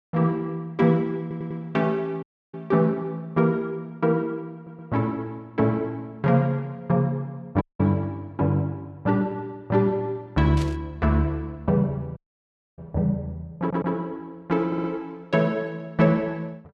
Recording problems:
stutter; 4 times, first at 1 s
dropout; at 2 s, at 7.5 s and at 12 s for 0.5 s
static burst; at 11 s; peak -9 dB vs average level

